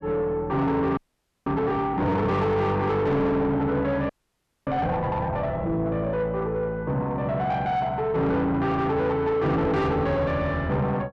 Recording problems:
distorted audio; soft clipping, signal-to-distortion ratio 8 dB
audio freezing; at 1 s and at 4 s for 0.5 s

